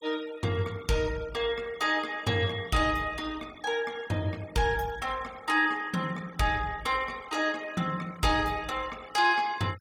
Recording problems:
noise reduction artefacts; signal-to-artefact ratio 21 dB

